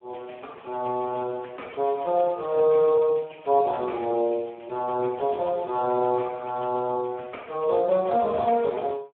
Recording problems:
telephone audio; 260 Hz to 2.2 kHz, Speex

